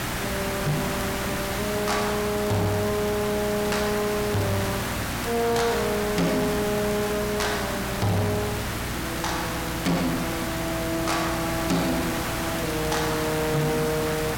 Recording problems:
distortion; soft clipping, signal-to-distortion ratio 12 dB
electrical hum; 60 Hz, harmonics up to 780 Hz, SNR 10 dB
background hiss; SNR 3 dB
crackle; vinyl, SNR 22 dB

